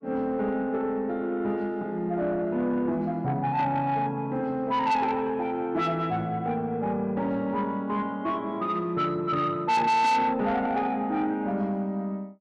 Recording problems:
distortion; soft clipping, signal-to-distortion ratio 8 dB

